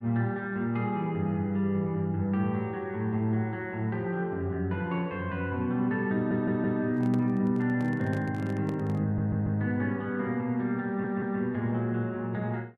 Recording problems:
audio stuttering; at 6 s, at 9 s and at 11 s
handling noise; from 7 to 9 s; peak -7 dB vs average level

